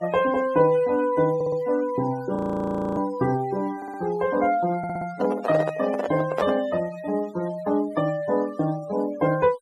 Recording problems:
denoising artefacts; signal-to-artefact ratio 19 dB
audio stuttering; at 1.5 s, at 4 s and at 5 s
audio freezing; at 2.5 s for 0.5 s
microphone handling noise; from 5 to 6.5 s; peak +2 dB vs average level

